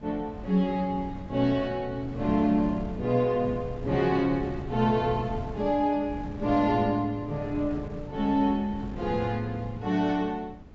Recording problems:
low-pass filter; nothing above 8 kHz
wind noise; below 240 Hz, SNR 13 dB

